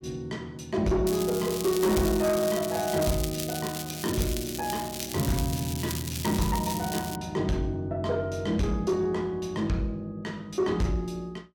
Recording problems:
distortion; soft clipping, signal-to-distortion ratio 11 dB
crackle; from 1 to 7 s; loose cable, SNR 7 dB

